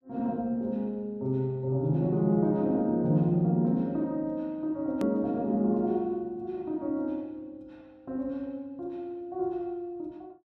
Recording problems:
hard cut with a click; at 5 s

